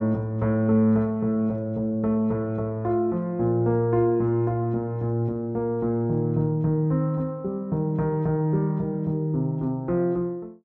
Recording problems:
none

